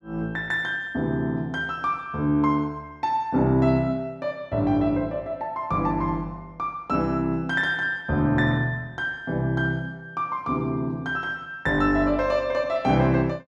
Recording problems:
none

